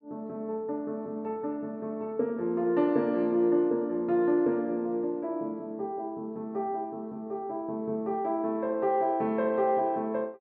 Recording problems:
none

